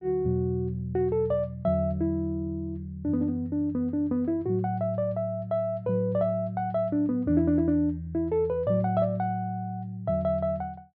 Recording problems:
treble missing; nothing above 5.5 kHz

